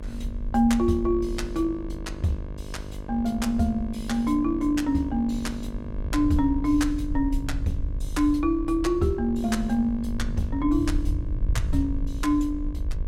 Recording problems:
hum; 50 Hz, harmonics up to 1.8 kHz, SNR 16 dB
low-frequency rumble; below 68 Hz, SNR 8 dB

